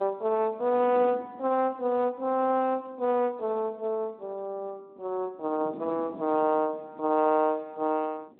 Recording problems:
telephone audio; 220 Hz to 3.2 kHz, Speex
wind noise; below 400 Hz, SNR 20 dB

